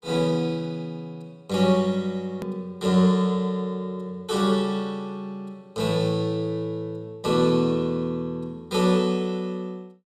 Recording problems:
edit click; at 2.5 s

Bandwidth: 15 kHz